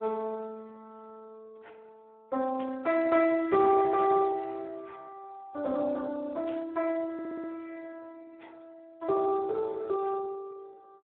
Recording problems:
phone line; 300 Hz to 3.3 kHz, Speex
static burst; at 2.5 s, at 4 s and at 6.5 s; peak -16 dB vs average level
stutter; at 7 s

